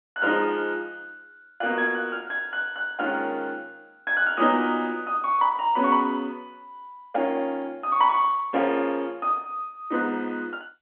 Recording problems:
phone line; 240 Hz to 3.4 kHz, G.711

